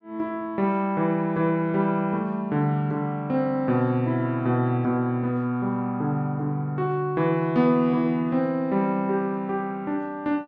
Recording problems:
none

